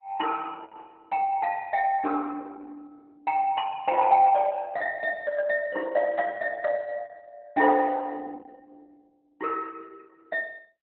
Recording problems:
codec artefacts; Opus, log-spectral distance 3 dB, nothing above 3.9 kHz

